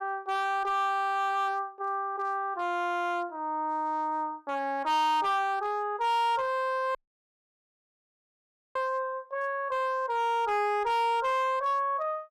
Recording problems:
distortion; hard clipping, signal-to-distortion ratio 11 dB
dropout; at 7 s for 2 s

